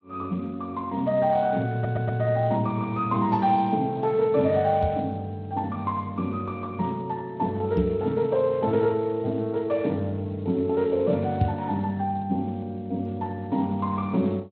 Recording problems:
lossy compression; Speex, log-spectral distance 2 dB
stutter; at 1.5 s
microphone thump; at 5 s, at 8 s and at 11 s; peak +6 dB vs average level

